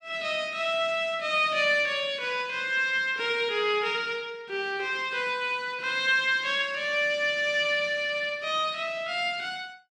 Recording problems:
none

